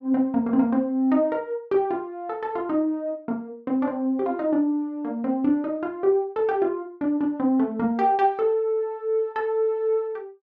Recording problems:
none

